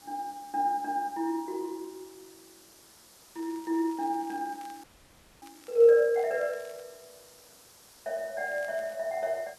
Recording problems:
background hiss; SNR 24 dB
crackling; from 3.5 to 7 s and at 8.5 s; loose cable, SNR 29 dB
audio freezing; at 5 s for 0.5 s

